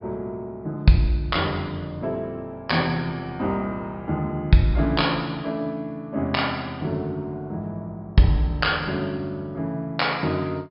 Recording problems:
low-pass filter; nothing above 5.5 kHz

